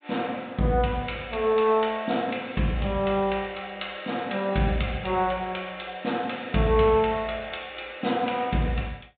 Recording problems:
low-pass filter; nothing above 4 kHz

